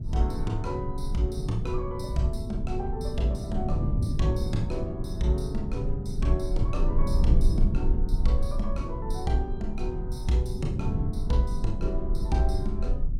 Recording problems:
rumble; below 40 Hz, strongest tone 20 Hz, SNR 4 dB
wind on the microphone; below 150 Hz, SNR 2 dB

